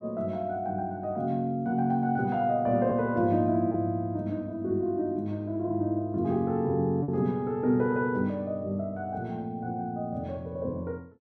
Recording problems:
lost packets; 0.7% of the sound replaced, filled with repeated pitch periods

